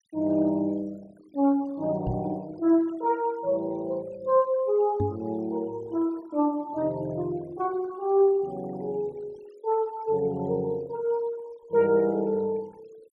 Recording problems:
noise reduction artefacts; signal-to-artefact ratio 27 dB
microphone bump; at 2 s and at 5 s; peak +1 dB vs average level

